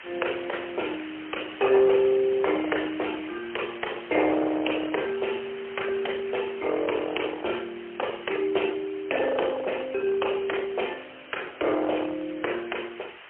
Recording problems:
telephone audio; 320 Hz to 3.2 kHz, AMR-NB, then MP3
distortion; hard clipping, signal-to-distortion ratio 15 dB
background hiss; SNR 16 dB

